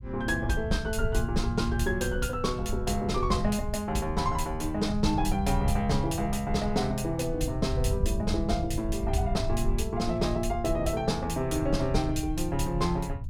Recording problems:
low-frequency rumble; below 92 Hz, SNR 5 dB

